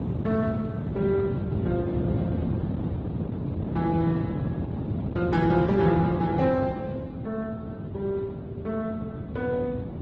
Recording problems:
lossy compression; Speex, then Opus, log-spectral distance 2 dB
wind noise; below 280 Hz, SNR 3 dB

